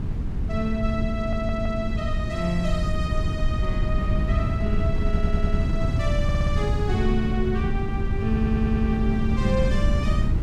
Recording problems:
wind on the microphone; below 120 Hz, SNR -3 dB
stutter; 4 times, first at 1 s

